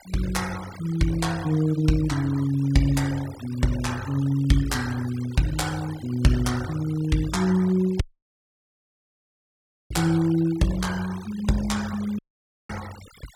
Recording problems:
noise reduction artefacts; signal-to-artefact ratio 18 dB
audio cutting out; at 8 s for 2 s and at 12 s for 0.5 s

